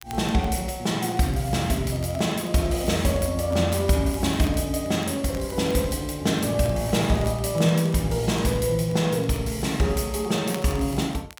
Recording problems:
crackling; vinyl, SNR 24 dB

